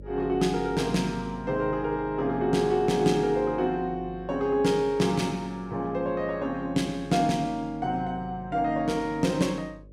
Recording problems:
electrical hum; 50 Hz, harmonics up to 600 Hz, SNR 20 dB

